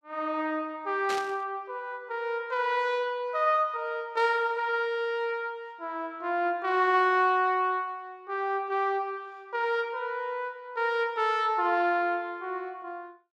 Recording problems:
static burst; at 1 s; peak -3 dB vs average level

